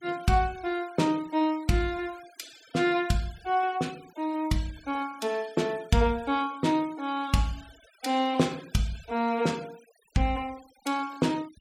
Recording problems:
denoising artefacts; signal-to-artefact ratio 22 dB

